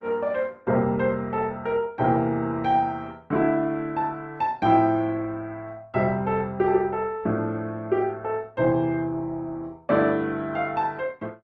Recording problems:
lossy compression; Opus, log-spectral distance 2 dB

